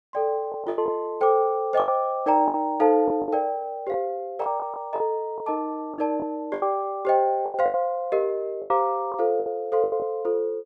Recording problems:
packet loss; 10% of the sound replaced, filled with the last packet

